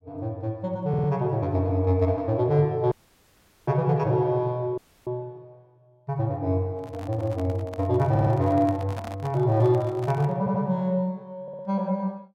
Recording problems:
stutter; 4 times, first at 1 s
dropout; at 3 s for 1 s and at 5 s
microphone handling noise; from 6.5 to 11 s; peak -9 dB vs average level

